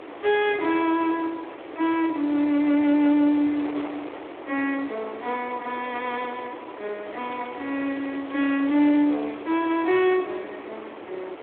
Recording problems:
phone line; 260 Hz to 3.7 kHz, Speex
distorted audio; hard clipping, uneven, signal-to-distortion ratio 12 dB
wind on the microphone; below 1.1 kHz, SNR 14 dB
crackle; from 7 to 10 s; loose cable, SNR 28 dB

